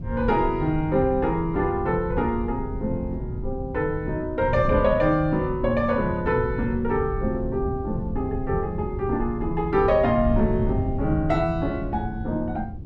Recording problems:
wind on the microphone; below 140 Hz, SNR 7 dB

